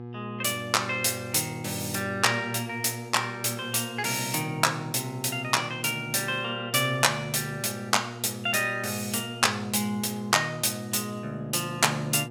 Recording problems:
hum; 60 Hz, harmonics up to 1.3 kHz, SNR 13 dB

